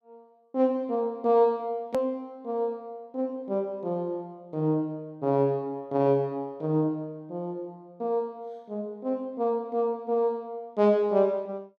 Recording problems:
click at an edit; at 2 s

